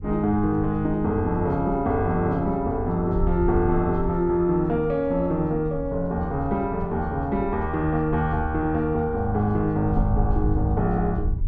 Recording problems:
wind noise; below 74 Hz, SNR 9 dB

